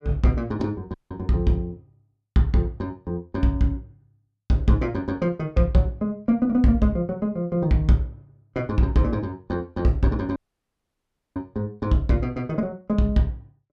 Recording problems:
dropout; at 1 s and at 10 s for 1 s

